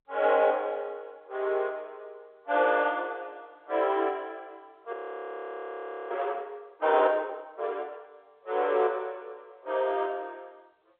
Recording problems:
phone line; 320 Hz to 3.6 kHz, G.711
audio freezing; at 5 s for 1 s

